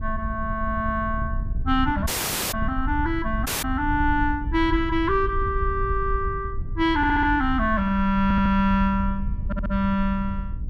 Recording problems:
wind noise; below 78 Hz, SNR 7 dB
dropout; at 2 s and at 3.5 s
audio stuttering; at 7 s, at 8 s and at 9.5 s

